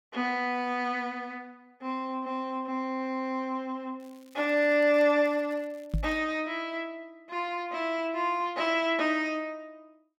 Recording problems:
crackle; from 4 to 6 s; loose cable, SNR 29 dB
microphone bump; at 6 s; peak +3 dB vs average level

